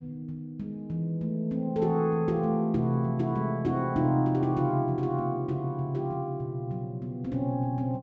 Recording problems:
low-pass filter; nothing above 7.9 kHz

